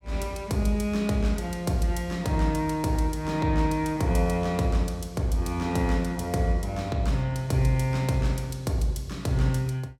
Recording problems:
none

